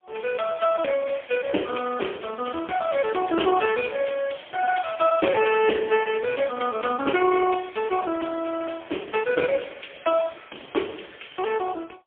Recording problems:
phone line; 260 Hz to 3.1 kHz, AMR-NB, then MP3

